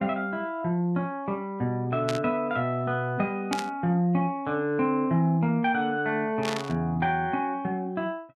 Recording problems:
burst of static; at 2 s, at 3.5 s and at 6.5 s; peak 0 dB vs average level

